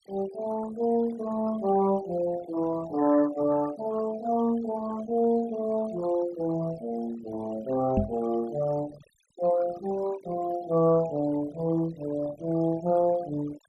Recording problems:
denoising artefacts; signal-to-artefact ratio 18 dB
microphone thump; at 8 s; peak +5 dB vs average level

